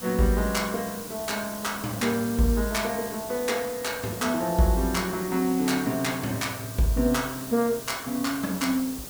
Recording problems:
background hiss; SNR 10 dB

